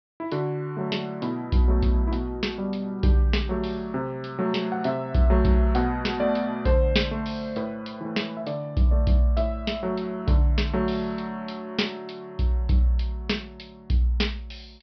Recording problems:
low-pass filter; nothing above 5.5 kHz

